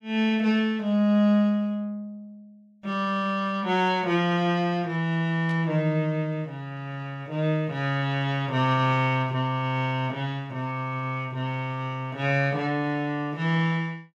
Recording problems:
burst of static; at 5.5 s; peak -14 dB vs average level

